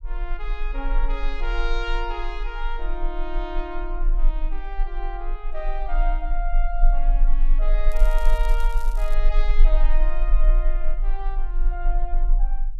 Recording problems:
low-frequency rumble; below 32 Hz, strongest tone 22 Hz, SNR -7 dB
crackle; from 8 to 9 s; loose cable, SNR 14 dB

